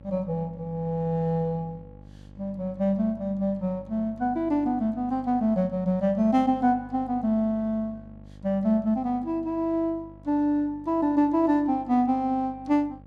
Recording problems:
electrical hum; 50 Hz, harmonics up to 850 Hz, SNR 22 dB

